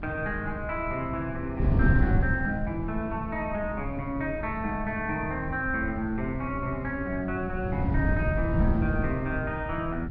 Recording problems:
low-pass filter; nothing above 5.5 kHz
wind noise; below 160 Hz, SNR 1 dB

